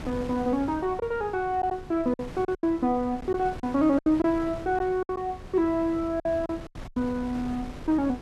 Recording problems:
wind noise; below 500 Hz, SNR 15 dB
lost packets; 7% of the sound replaced, filled with silence

